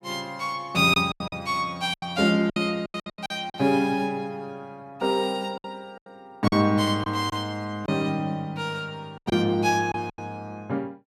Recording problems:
packet loss; 9% of the sound replaced, filled with silence

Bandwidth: 14.5 kHz